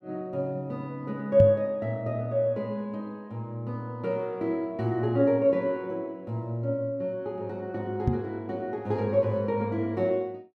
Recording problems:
microphone thump; at 1.5 s and at 8 s; peak +7 dB vs average level

